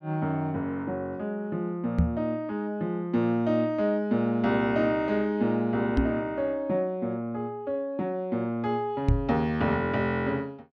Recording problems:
microphone thump; at 2 s, at 6 s and at 9 s; peak +8 dB vs average level

